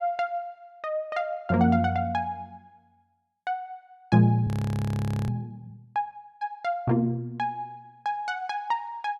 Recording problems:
audio freezing; at 4.5 s for 1 s

